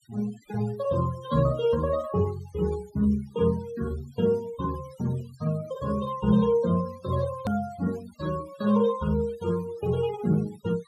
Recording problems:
denoising artefacts; signal-to-artefact ratio 21 dB
hard cut with a click; at 7.5 s

